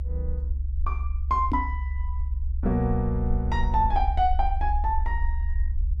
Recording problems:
low-frequency rumble; below 68 Hz, SNR 1 dB
microphone thump; at 1.5 s; peak +5 dB vs average level

